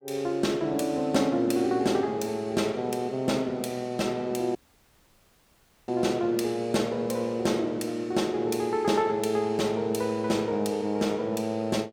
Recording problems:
audio cutting out; at 4.5 s for 1.5 s

